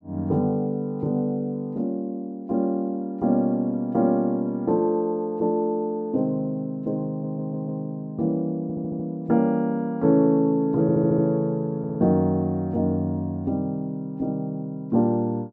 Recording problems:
stutter; 4 times, first at 7 s

